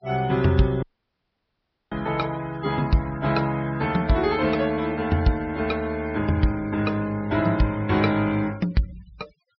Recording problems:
treble cut off; nothing above 5.5 kHz
noise reduction artefacts; signal-to-artefact ratio 22 dB
dropout; at 1 s for 1 s

